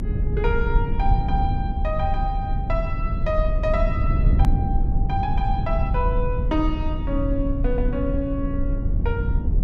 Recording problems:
rumble; below 92 Hz, SNR -3 dB
edit click; at 4.5 s

